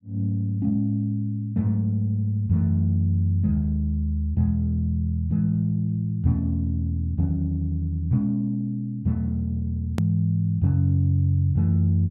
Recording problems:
edit click; at 10 s

